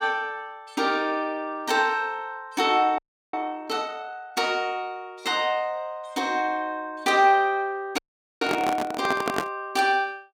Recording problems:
frozen audio; at 3 s and at 8 s
microphone handling noise; from 8.5 to 9.5 s; peak +3 dB vs average level

